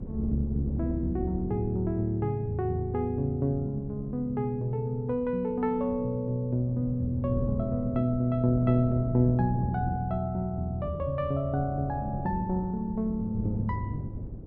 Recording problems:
wind noise; below 220 Hz, SNR 10 dB

